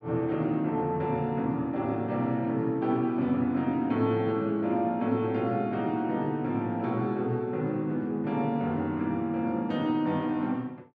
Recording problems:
none

